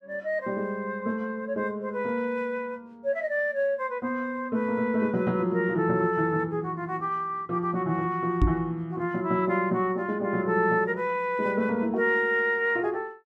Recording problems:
microphone thump; at 8.5 s; peak +6 dB vs average level

